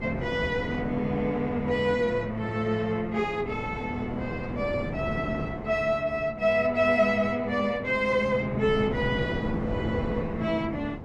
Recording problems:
wind noise; below 440 Hz, SNR 9 dB

